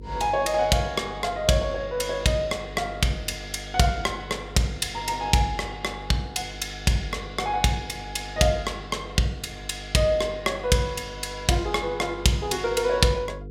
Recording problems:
electrical hum; 50 Hz, harmonics up to 500 Hz, SNR 16 dB

